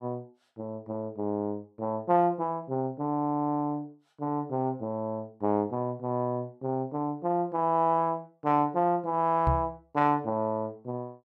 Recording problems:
microphone bump; at 9.5 s; peak +5 dB vs average level

